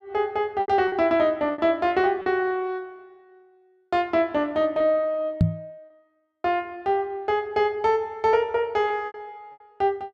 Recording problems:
packet loss; 4% of the sound replaced, filled with repeated pitch periods
microphone bump; at 5.5 s; peak +8 dB vs average level

